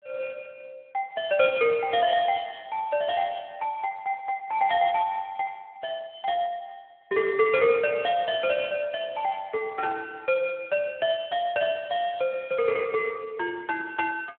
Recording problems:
phone line; 370 Hz to 3.6 kHz, Speex

